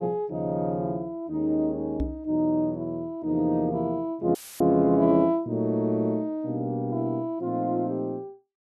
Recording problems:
knock on the microphone; at 2 s; peak 0 dB vs average level
dropout; at 4.5 s; filled with static

